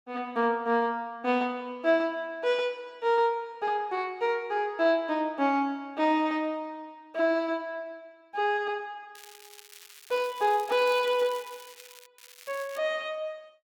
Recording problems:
crackle; from 9 to 12 s and at 12 s; loose cable, SNR 20 dB

